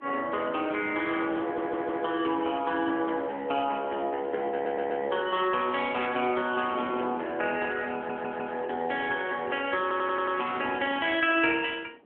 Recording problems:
telephone audio; 220 Hz to 3.3 kHz, AMR-NB
wind on the microphone; below 610 Hz, SNR 20 dB
audio stuttering; 4 times, first at 1.5 s

